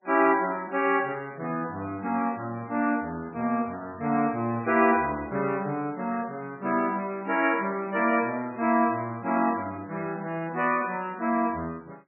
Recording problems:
codec artefacts; MP3, log-spectral distance 3 dB, nothing above 2.7 kHz

